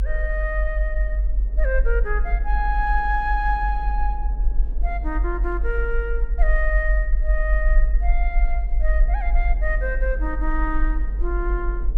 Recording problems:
rumble; below 46 Hz, SNR -4 dB
wind on the microphone; below 390 Hz, SNR 17 dB

